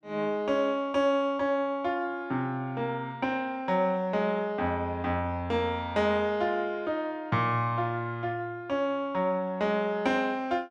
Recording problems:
none

